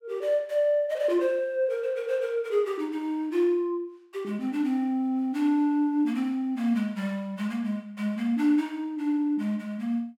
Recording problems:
none

